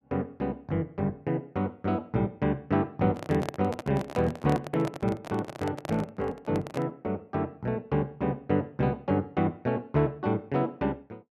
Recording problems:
microphone handling noise; from 3 to 7 s; peak 0 dB vs average level

